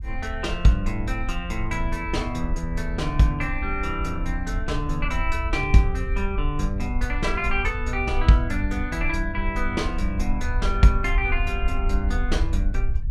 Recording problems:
rumble; below 60 Hz, SNR 4 dB

